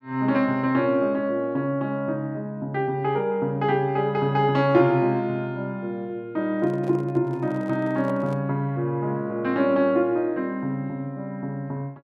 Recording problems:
handling noise; from 6.5 to 8.5 s; peak -10 dB vs average level

